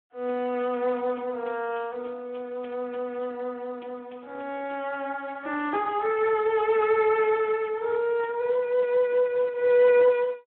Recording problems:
phone line; 340 Hz to 3.6 kHz, Speex

